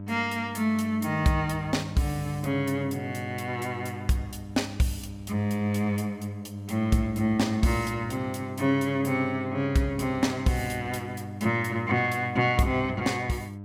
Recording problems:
hum; 50 Hz, harmonics up to 700 Hz, SNR 12 dB

